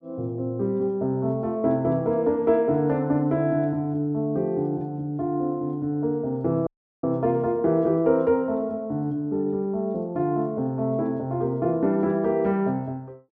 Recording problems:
audio cutting out; at 6.5 s

